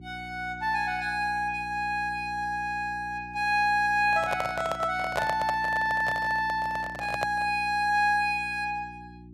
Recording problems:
hum; 60 Hz, harmonics up to 360 Hz, SNR 19 dB
microphone handling noise; from 4 to 7.5 s; peak +2 dB vs average level

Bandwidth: 14.5 kHz